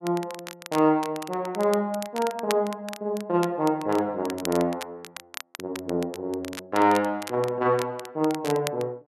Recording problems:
crackle; vinyl, SNR 14 dB

